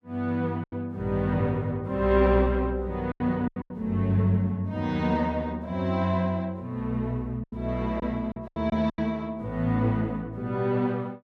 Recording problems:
packet loss; 6% of the sound replaced, filled with silence

